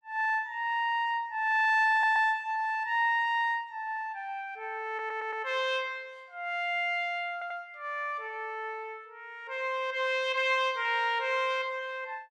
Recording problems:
stutter; at 2 s, at 5 s and at 7.5 s

